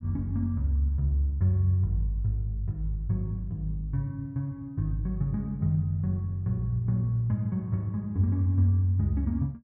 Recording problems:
none

